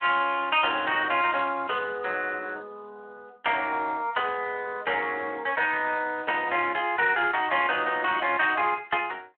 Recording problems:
phone line; 320 Hz to 3.4 kHz, Speex

